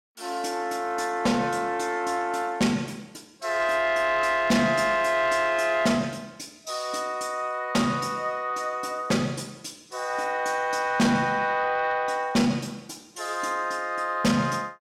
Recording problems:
distorted audio; soft clipping, signal-to-distortion ratio 12 dB

